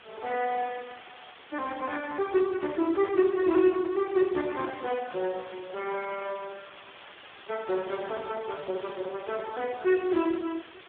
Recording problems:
telephone audio; 300 Hz to 2.1 kHz, Speex
hiss; SNR 19 dB

